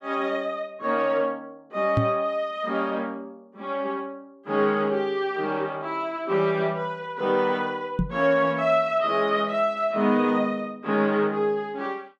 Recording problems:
knock on the microphone; at 2 s and at 8 s; peak +4 dB vs average level

